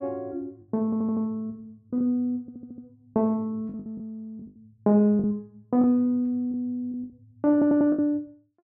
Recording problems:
lost packets; 8% of the sound replaced, filled with the last packet
audio stuttering; at 1 s, at 2.5 s and at 7.5 s

